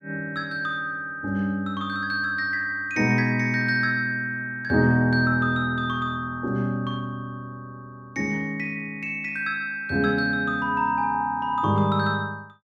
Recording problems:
none

